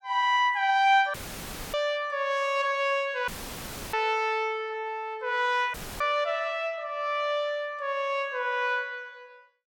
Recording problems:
audio cutting out; at 1 s for 0.5 s, at 3.5 s for 0.5 s and at 5.5 s; filled with static

